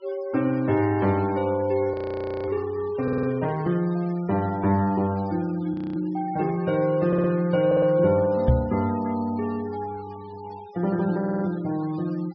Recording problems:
treble missing; nothing above 5.5 kHz
denoising artefacts; signal-to-artefact ratio 22 dB
audio freezing; at 2 s for 0.5 s and at 5.5 s
audio stuttering; 4 times, first at 3 s
knock on the microphone; at 8.5 s; peak +7 dB vs average level

